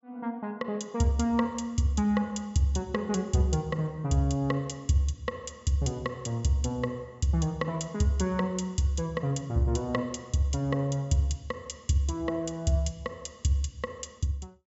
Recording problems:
treble cut off; nothing above 8 kHz

